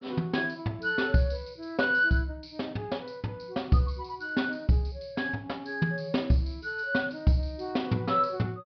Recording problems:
treble missing; nothing above 5.5 kHz

